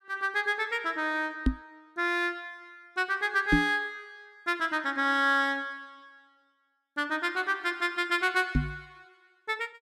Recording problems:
microphone thump; at 1.5 s, at 3.5 s and at 8.5 s; peak +8 dB vs average level

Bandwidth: 15 kHz